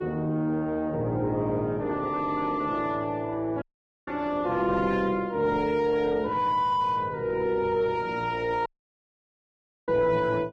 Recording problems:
lossy compression; Vorbis, log-spectral distance 2 dB
distortion; soft clipping, signal-to-distortion ratio 9 dB
dropout; at 3.5 s and at 8.5 s for 1 s

